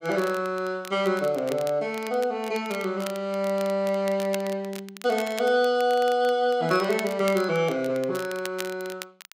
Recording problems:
crackling; vinyl, SNR 17 dB

